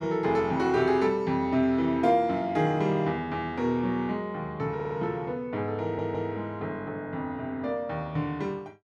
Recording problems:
stutter; at 5 s and at 6 s

